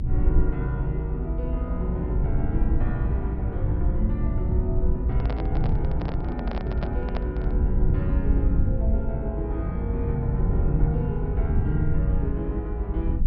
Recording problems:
low-pass filter; nothing above 5.5 kHz
rumble; below 80 Hz, SNR -3 dB
microphone handling noise; from 5 to 7.5 s; peak 0 dB vs average level

